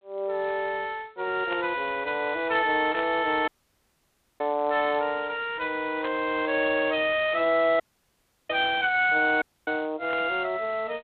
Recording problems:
telephone audio; 240 Hz to 3.5 kHz, G.726
static burst; 4 times, first at 1.5 s; peak -10 dB vs average level
audio cutting out; at 3.5 s for 1 s, at 8 s for 0.5 s and at 9.5 s

